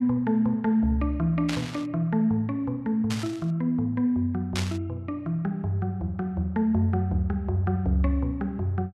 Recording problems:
static burst; at 1.5 s, at 3 s and at 4.5 s; peak -1 dB vs average level

